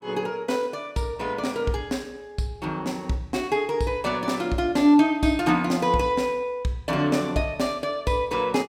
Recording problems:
none

